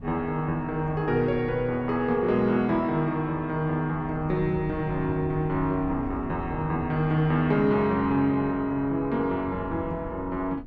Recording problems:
wind on the microphone; below 180 Hz, SNR 15 dB

